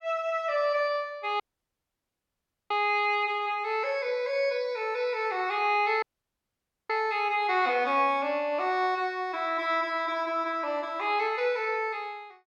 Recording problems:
dropout; at 1.5 s for 1.5 s and at 6 s for 1 s

